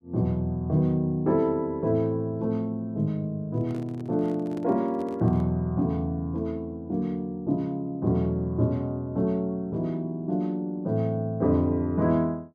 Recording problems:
handling noise; from 3.5 to 5.5 s; peak -11 dB vs average level

